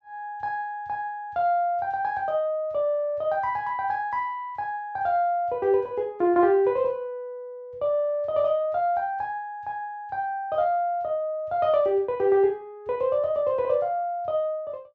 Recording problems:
none

